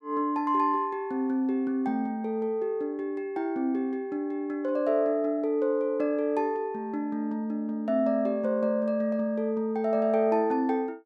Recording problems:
none

